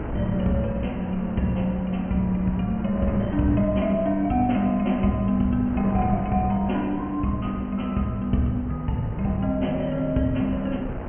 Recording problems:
low-pass filter; nothing above 3.1 kHz
wind noise; below 480 Hz, SNR 11 dB

